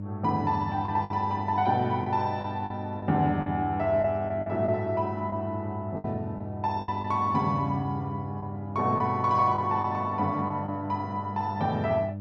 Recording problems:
hum; 50 Hz, harmonics up to 600 Hz, SNR 9 dB
packet loss; 5% of the sound replaced, filled with the last packet

